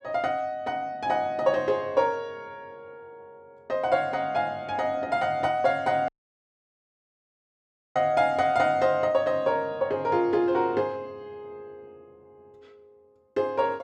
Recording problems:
audio cutting out; at 6 s for 2 s

